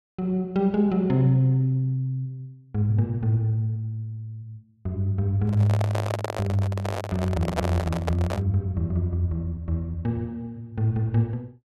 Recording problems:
handling noise; from 5.5 to 8.5 s; peak +3 dB vs average level

